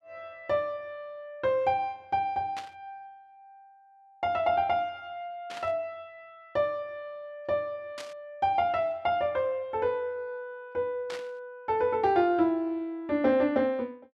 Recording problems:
burst of static; 4 times, first at 2.5 s; peak -8 dB vs average level

